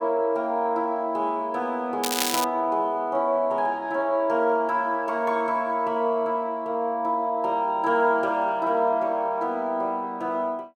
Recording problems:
crackle; at 2 s; loose cable, SNR 3 dB

